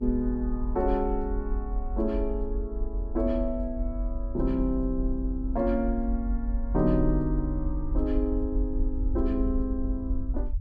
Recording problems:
rumble; below 48 Hz, strongest tone 46 Hz, SNR 3 dB

